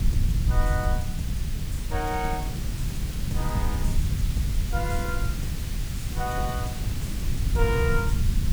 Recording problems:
background hiss; slope +1 dB per octave, SNR 6 dB
rumble; below 100 Hz, SNR -4 dB
wind on the microphone; below 190 Hz, SNR 6 dB

